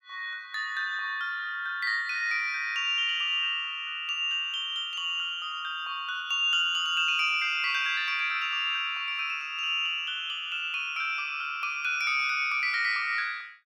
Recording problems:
none

